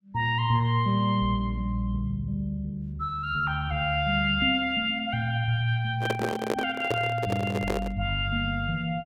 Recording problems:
handling noise; from 6 to 8 s; peak +3 dB vs average level

